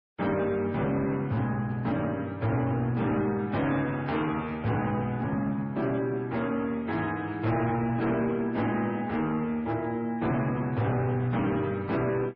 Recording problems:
codec artefacts; MP3, log-spectral distance 2 dB, nothing above 5.3 kHz
distortion; hard clipping, uneven, signal-to-distortion ratio 12 dB

